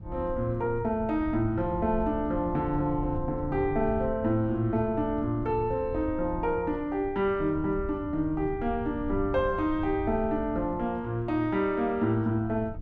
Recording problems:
rumble; below 100 Hz, SNR 12 dB

